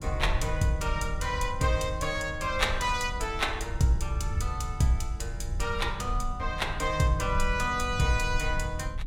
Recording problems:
rumble; below 78 Hz, SNR 6 dB

